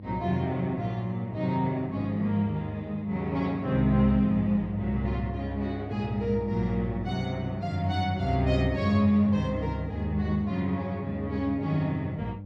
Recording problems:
hum; 50 Hz, harmonics up to 600 Hz, SNR 11 dB

